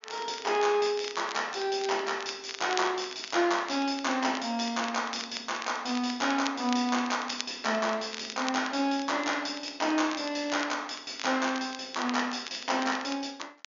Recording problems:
treble cut off; nothing above 7 kHz
crackling; vinyl, SNR 13 dB

